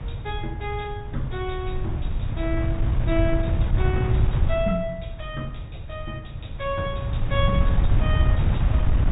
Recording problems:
treble cut off; nothing above 4 kHz
wind noise; below 110 Hz, SNR -5 dB

